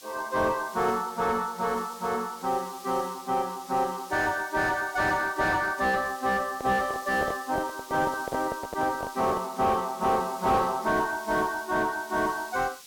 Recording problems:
distortion; soft clipping, signal-to-distortion ratio 7 dB
background hiss; SNR 18 dB
microphone handling noise; from 6.5 to 9.5 s; peak 0 dB vs average level

